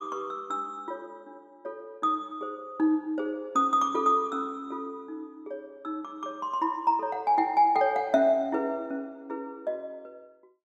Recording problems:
none

